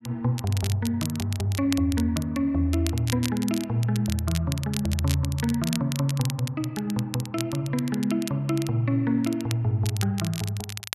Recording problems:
crackle; vinyl, SNR 11 dB

